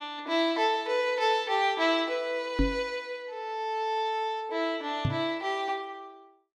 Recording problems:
microphone bump; at 2.5 s and at 5 s; peak +5 dB vs average level

